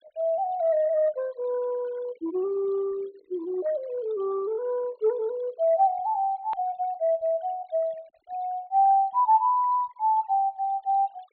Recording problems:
treble cut off; nothing above 4.3 kHz
denoising artefacts; signal-to-artefact ratio 25 dB
click at an edit; at 6.5 s

